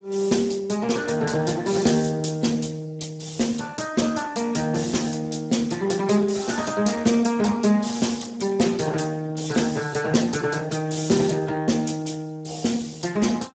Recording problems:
codec artefacts; Speex, log-spectral distance 7 dB, nothing above 7.6 kHz

